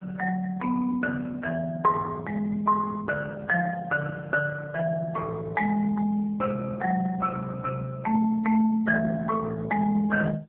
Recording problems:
telephone audio; 240 Hz to 2.3 kHz, AMR-NB

